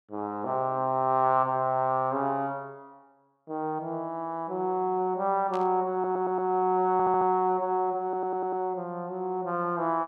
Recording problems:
static burst; at 5.5 s; peak -13 dB vs average level
stutter; at 6 s, at 7 s and at 8 s

